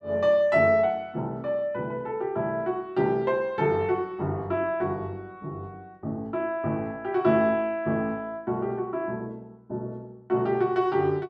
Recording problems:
none

